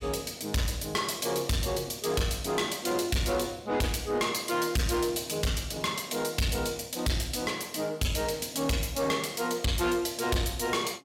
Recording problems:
distorted audio; soft clipping, signal-to-distortion ratio 8 dB

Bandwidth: 16 kHz